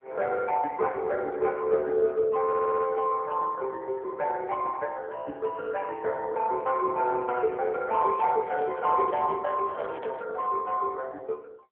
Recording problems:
telephone audio; 320 Hz to 3 kHz, AMR-NB
stutter; at 2.5 s
handling noise; from 8 to 10 s; peak -5 dB vs average level

